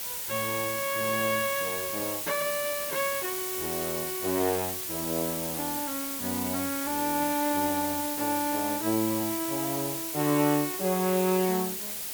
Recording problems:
hiss; SNR 2 dB

